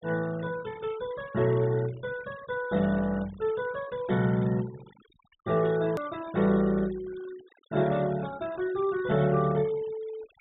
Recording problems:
treble missing; nothing above 4 kHz
denoising artefacts; signal-to-artefact ratio 21 dB
hard cut with a click; at 6 s

